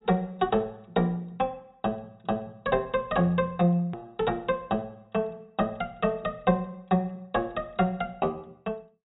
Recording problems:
low-pass filter; nothing above 4 kHz
click at an edit; at 4 s

